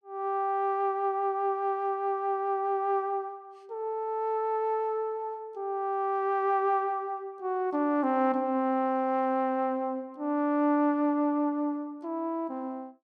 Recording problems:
none

